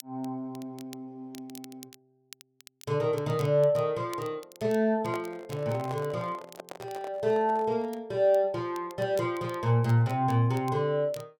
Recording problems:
crackling; vinyl, SNR 24 dB
microphone handling noise; from 5 to 8 s; peak -8 dB vs average level

